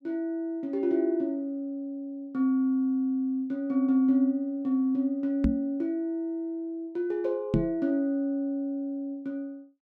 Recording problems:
microphone bump; at 5.5 s and at 7.5 s; peak +6 dB vs average level

